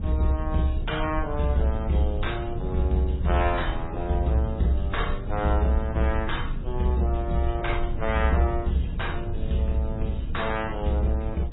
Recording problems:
lossy codec; AAC, then MP3, log-spectral distance 3 dB, nothing above 3.8 kHz
low-frequency rumble; below 92 Hz, SNR 6 dB

